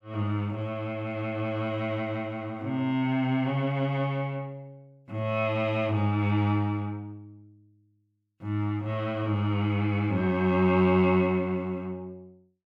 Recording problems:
none

